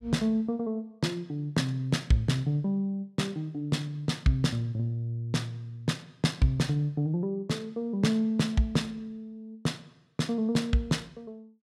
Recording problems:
none

